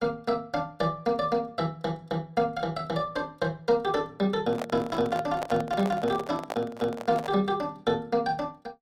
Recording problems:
handling noise; from 4.5 to 7.5 s; peak 0 dB vs average level

